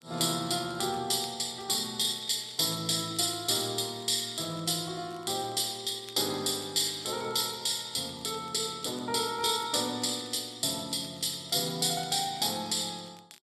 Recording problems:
crackling; vinyl, SNR 27 dB

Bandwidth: 13 kHz